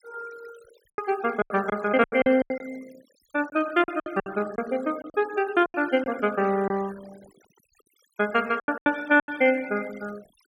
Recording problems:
denoising artefacts; signal-to-artefact ratio 20 dB
packet loss; 12% of the sound replaced, filled with silence

